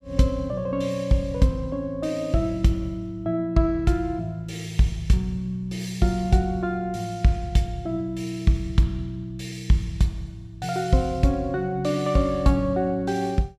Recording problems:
none

